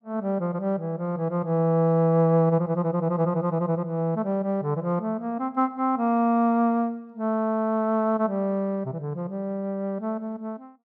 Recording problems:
none

